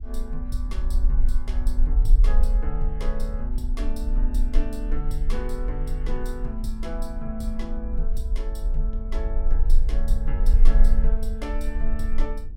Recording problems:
low-frequency rumble; below 38 Hz, strongest tone 20 Hz, SNR -9 dB
wind on the microphone; below 200 Hz, SNR 16 dB

